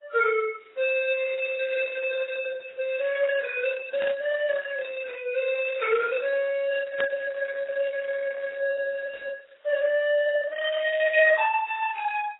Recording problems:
lossy codec; Opus, then AAC, log-spectral distance 3 dB, nothing above 3.8 kHz
burst of static; at 4 s and at 7 s; peak -4 dB vs average level

